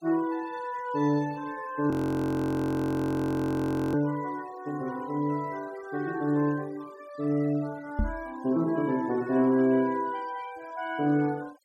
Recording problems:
noise reduction artefacts; signal-to-artefact ratio 22 dB
audio freezing; at 2 s for 2 s
microphone thump; at 8 s; peak +3 dB vs average level

